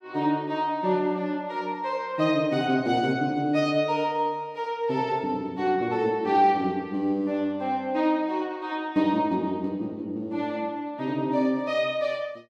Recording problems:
none

